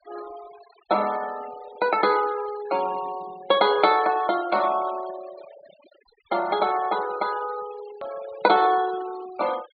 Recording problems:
treble missing; nothing above 4.5 kHz
denoising artefacts; signal-to-artefact ratio 18 dB
edit click; at 8 s

